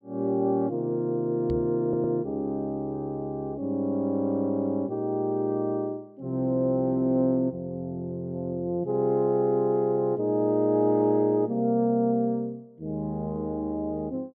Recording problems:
microphone thump; at 1.5 s; peak -3 dB vs average level
stutter; at 2 s

